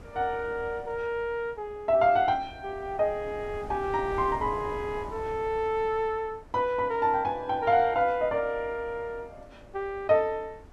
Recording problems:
wind noise; below 440 Hz, SNR 19 dB

